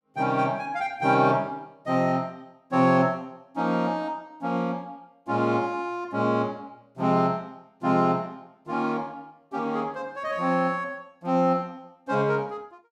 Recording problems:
none

